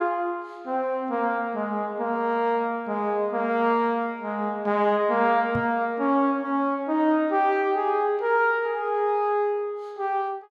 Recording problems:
knock on the microphone; at 5.5 s; peak -4 dB vs average level

